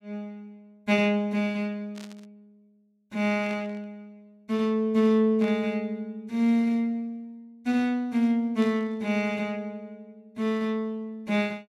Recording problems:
burst of static; 4 times, first at 2 s; peak -14 dB vs average level

